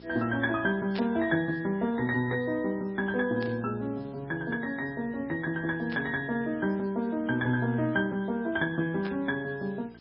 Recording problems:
treble cut off; nothing above 5.4 kHz
codec artefacts; MP3, log-spectral distance 7 dB
mains hum; 60 Hz, harmonics up to 960 Hz, SNR 24 dB
background hiss; SNR 29 dB
static burst; 4 times, first at 1 s; peak -8 dB vs average level

